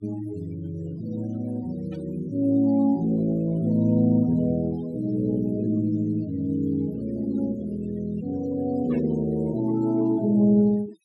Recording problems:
noise reduction artefacts; signal-to-artefact ratio 23 dB
static burst; at 2 s and at 9 s; peak -17 dB vs average level

